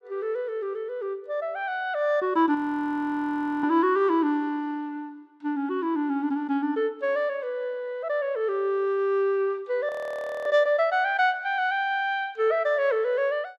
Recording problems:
audio freezing; at 2.5 s for 1 s and at 10 s for 0.5 s

